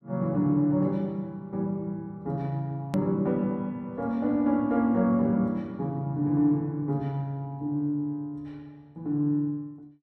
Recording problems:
edit click; at 3 s

